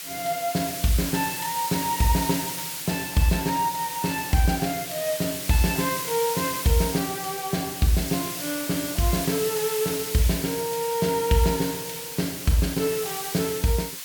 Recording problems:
background hiss; slope +3 dB per octave, SNR 5 dB

